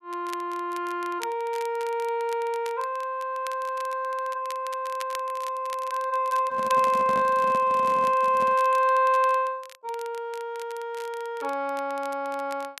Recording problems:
crackling; vinyl, SNR 20 dB
handling noise; from 6.5 to 8.5 s; peak -6 dB vs average level

